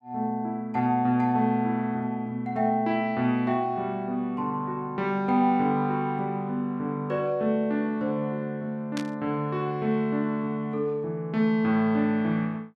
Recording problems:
static burst; at 9 s; peak -6 dB vs average level

